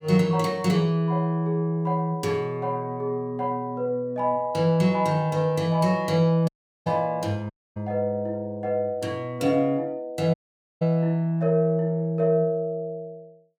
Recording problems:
audio cutting out; at 6.5 s, at 7.5 s and at 10 s

